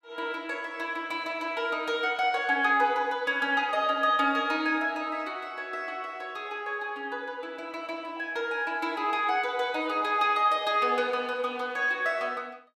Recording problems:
none

